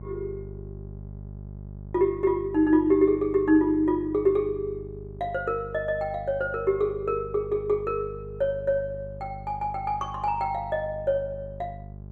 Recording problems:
hum; 50 Hz, harmonics up to 600 Hz, SNR 15 dB

